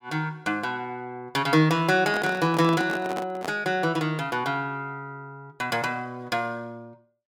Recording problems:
microphone handling noise; from 2 to 3.5 s; peak -3 dB vs average level

